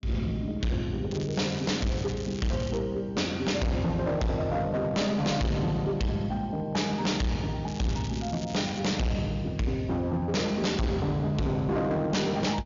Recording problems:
low-pass filter; nothing above 7.1 kHz
distortion; hard clipping, signal-to-distortion ratio 6 dB
crackling; from 1 to 3 s and from 7.5 to 9 s; loose cable, SNR 15 dB

